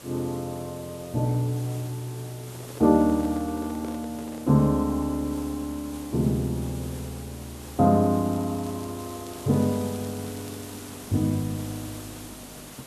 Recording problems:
hiss; slope -3 dB per octave, SNR 16 dB
handling noise; from 2.5 to 4.5 s; peak -9 dB vs average level
crackling; from 8.5 to 11 s; loose cable, SNR 25 dB

